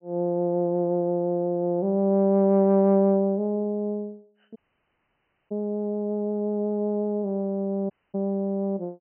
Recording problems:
low-pass filter; nothing above 3 kHz
audio cutting out; at 4.5 s for 1 s and at 8 s

